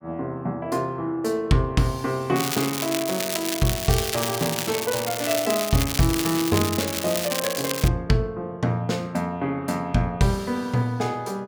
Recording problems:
crackle; from 2.5 to 8 s; loose cable, SNR 3 dB

